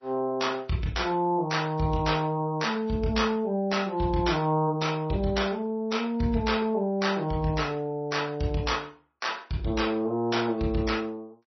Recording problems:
lossy compression; MP3, log-spectral distance 3 dB, nothing above 5.8 kHz

